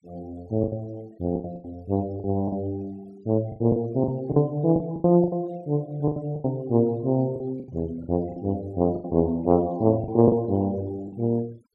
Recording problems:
noise reduction artefacts; signal-to-artefact ratio 28 dB
packet loss; 11% of the sound replaced, filled with the last packet

